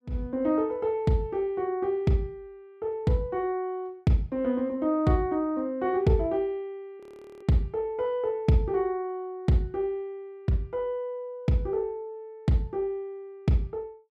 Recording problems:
frozen audio; at 7 s

